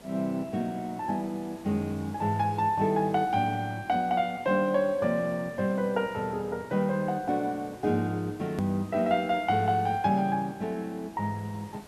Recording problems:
hiss; slope -5 dB per octave, SNR 21 dB
edit click; at 8.5 s

